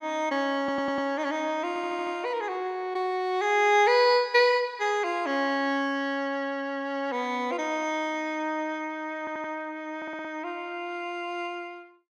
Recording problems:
audio stuttering; 4 times, first at 0.5 s

